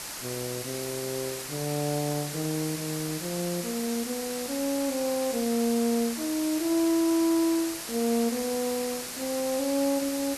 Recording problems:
hiss; slope 0 dB per octave, SNR 6 dB

